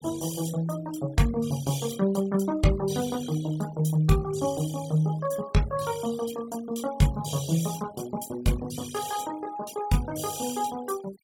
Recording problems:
noise reduction artefacts; signal-to-artefact ratio 17 dB

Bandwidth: 17 kHz